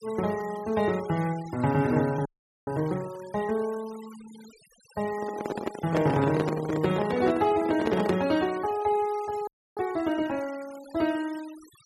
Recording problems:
denoising artefacts; signal-to-artefact ratio 18 dB
frozen audio; at 2.5 s and at 9.5 s
handling noise; from 5 to 8.5 s; peak +3 dB vs average level

